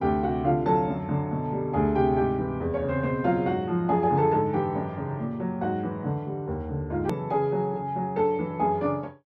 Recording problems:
click at an edit; at 7 s

